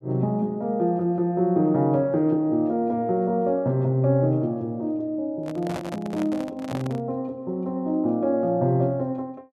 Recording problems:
handling noise; from 5.5 to 7 s; peak -5 dB vs average level

